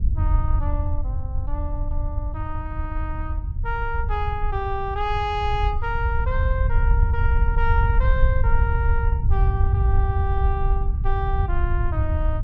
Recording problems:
rumble; below 80 Hz, SNR -5 dB

